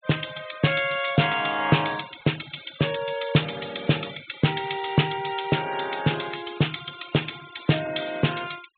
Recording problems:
low-pass filter; nothing above 4 kHz
noise reduction artefacts; signal-to-artefact ratio 19 dB

